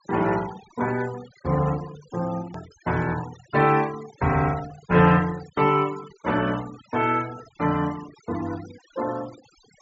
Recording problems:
low-pass filter; nothing above 8 kHz
denoising artefacts; signal-to-artefact ratio 17 dB
click at an edit; at 2.5 s

